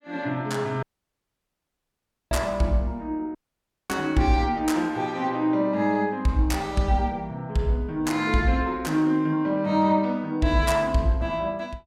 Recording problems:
dropout; at 1 s for 1.5 s and at 3.5 s for 0.5 s

